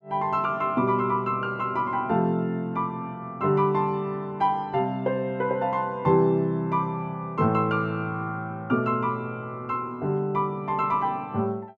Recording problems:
none

